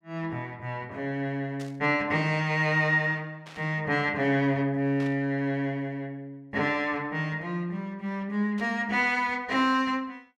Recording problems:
burst of static; 4 times, first at 1.5 s; peak -13 dB vs average level

